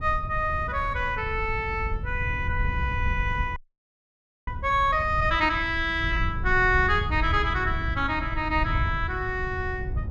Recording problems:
wind noise; below 96 Hz, SNR 6 dB
audio freezing; at 3.5 s for 1 s

